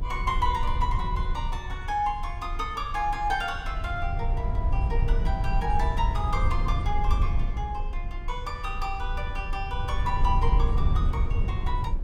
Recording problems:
low-frequency rumble; below 72 Hz, SNR -1 dB

